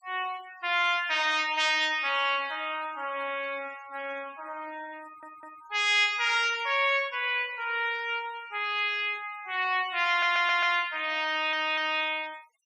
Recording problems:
noise reduction artefacts; signal-to-artefact ratio 21 dB
audio stuttering; at 5 s, at 10 s and at 11 s

